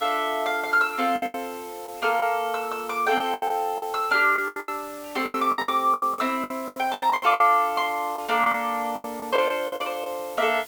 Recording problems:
background hiss; slope -1 dB per octave, SNR 19 dB
lost packets; 14% of the sound replaced, filled with the last packet

